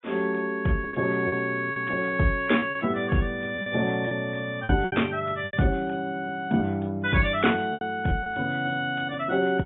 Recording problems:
treble missing; nothing above 3.6 kHz
codec artefacts; AAC, log-spectral distance 2 dB
packet loss; 7% of the sound replaced, filled with repeated pitch periods

